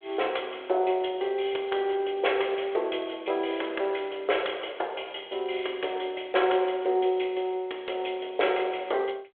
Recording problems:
telephone audio; 320 Hz to 3.4 kHz, G.726

